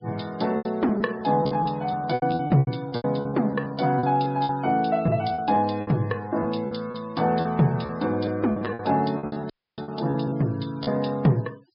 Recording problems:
low-pass filter; nothing above 5.5 kHz
denoising artefacts; signal-to-artefact ratio 25 dB
packet loss; 14% of the sound replaced, filled with repeated pitch periods
dropout; at 9.5 s

